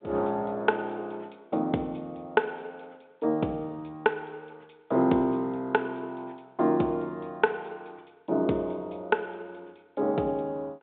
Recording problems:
telephone audio; 240 Hz to 3.9 kHz, G.726

